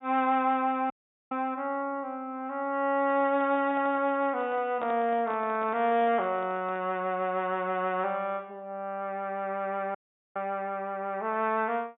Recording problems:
low-pass filter; nothing above 4 kHz
audio cutting out; at 1 s and at 10 s
microphone handling noise; from 3 to 7 s; peak -7 dB vs average level

